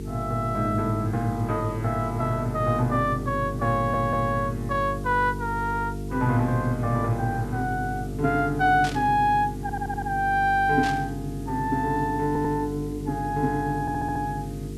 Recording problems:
hum; 50 Hz, harmonics up to 450 Hz, SNR 8 dB
hiss; slope +1 dB per octave, SNR 25 dB
stutter; 4 times, first at 4 s
static burst; at 9 s and at 11 s; peak -6 dB vs average level

